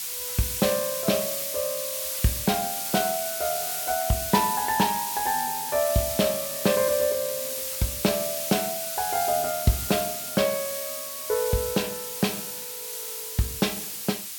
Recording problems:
background hiss; slope +4 dB per octave, SNR 2 dB

